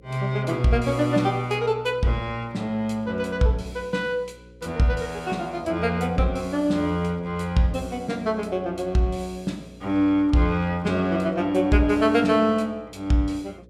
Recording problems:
hum; 60 Hz, harmonics up to 540 Hz, SNR 25 dB

